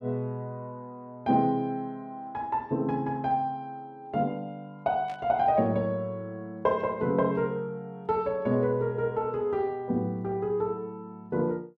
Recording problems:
burst of static; at 5 s; peak -15 dB vs average level

